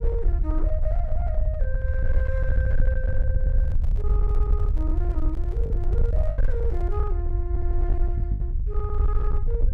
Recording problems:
distortion; hard clipping, uneven, signal-to-distortion ratio 10 dB
low-frequency rumble; below 64 Hz, SNR -10 dB
packet loss; 2% of the sound replaced, filled with the last packet
microphone handling noise; from 3.5 to 7 s; peak -8 dB vs average level

